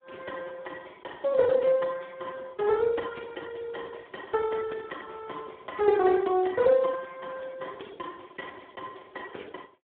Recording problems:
phone line; 220 Hz to 3.7 kHz, Speex

